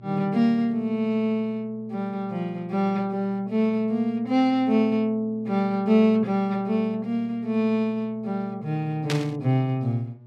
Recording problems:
electrical hum; 60 Hz, harmonics up to 600 Hz, SNR 22 dB
static burst; at 9 s; peak 0 dB vs average level

